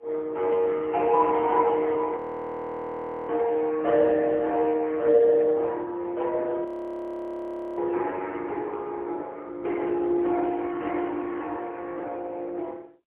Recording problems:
phone line; 260 Hz to 3.8 kHz, AMR-NB, then MP3
audio freezing; at 2 s for 1 s and at 6.5 s for 1 s

